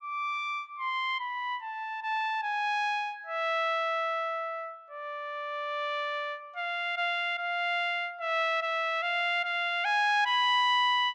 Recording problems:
none

